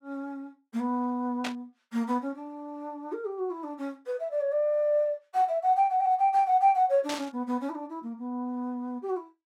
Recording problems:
static burst; at 1.5 s and at 7 s; peak -2 dB vs average level

